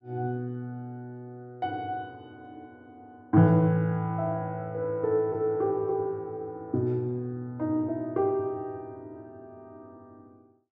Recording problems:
none

